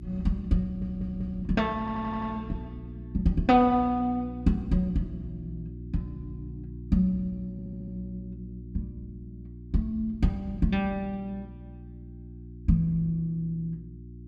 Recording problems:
hum; 60 Hz, harmonics up to 360 Hz, SNR 13 dB
audio stuttering; at 0.5 s, at 2 s and at 7.5 s

